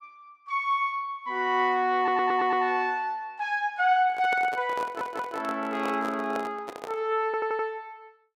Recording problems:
audio stuttering; at 2 s, at 5 s and at 7.5 s
microphone handling noise; from 4 to 7 s; peak -5 dB vs average level

